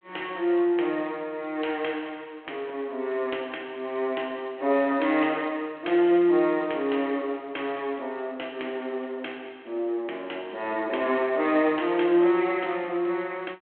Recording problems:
telephone audio; 280 Hz to 3.3 kHz, G.726

